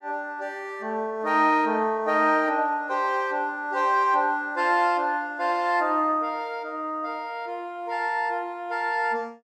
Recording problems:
none

